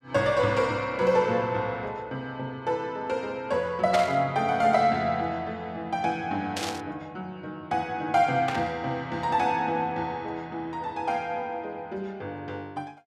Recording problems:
burst of static; at 4 s, at 6.5 s and at 8.5 s; peak +1 dB vs average level

